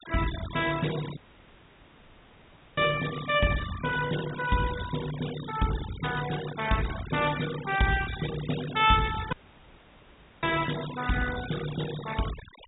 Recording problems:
low-pass filter; nothing above 4 kHz
noise reduction artefacts; signal-to-artefact ratio 11 dB
audio cutting out; at 1 s for 1.5 s and at 9.5 s for 1 s

